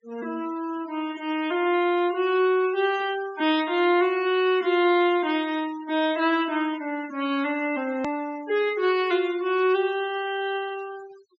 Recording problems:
low-pass filter; nothing above 7.6 kHz
denoising artefacts; signal-to-artefact ratio 19 dB
click at an edit; at 8 s

